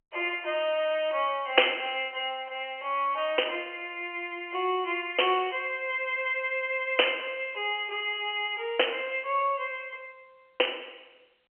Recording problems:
phone line; 320 Hz to 3.1 kHz, G.711

